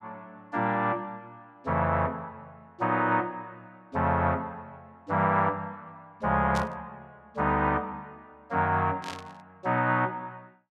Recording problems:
burst of static; at 6.5 s and at 9 s; peak -6 dB vs average level

